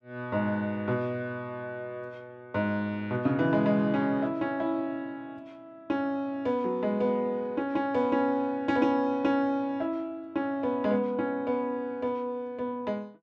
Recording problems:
none

